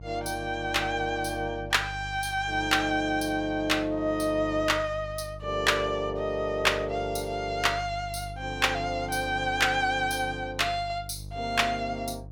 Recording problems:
mains hum; 50 Hz, harmonics up to 500 Hz, SNR 14 dB

